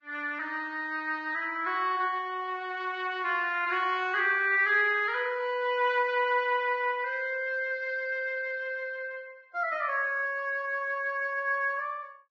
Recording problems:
lossy compression; Vorbis, log-spectral distance 2 dB

